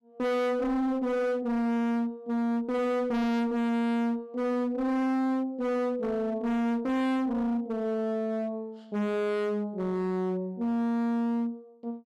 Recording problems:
distortion; hard clipping, signal-to-distortion ratio 6 dB

